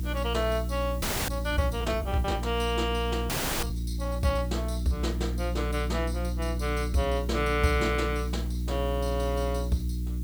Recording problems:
electrical hum; 60 Hz, harmonics up to 360 Hz, SNR 2 dB
hiss; SNR 20 dB
audio freezing; at 1 s and at 3.5 s

